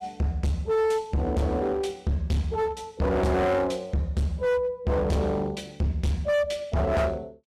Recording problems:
distorted audio; hard clipping, uneven, signal-to-distortion ratio 6 dB

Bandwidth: 14.5 kHz